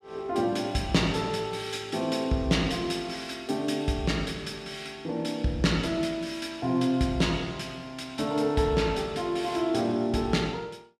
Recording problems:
none

